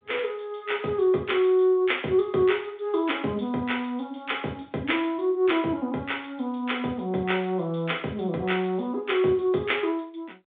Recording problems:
telephone audio; 150 Hz to 3.7 kHz, G.726

